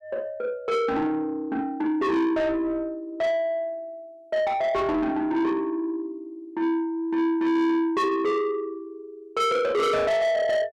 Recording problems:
distortion; soft clipping, signal-to-distortion ratio 8 dB

